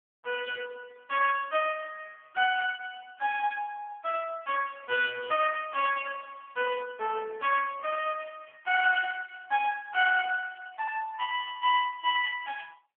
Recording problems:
phone line; 220 Hz to 2.9 kHz, AMR-NB

